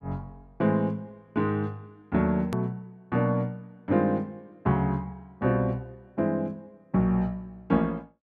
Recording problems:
hard cut with a click; at 2.5 s

